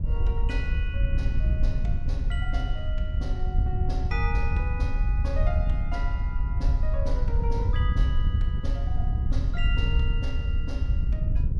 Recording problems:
wind on the microphone; below 76 Hz, SNR -10 dB

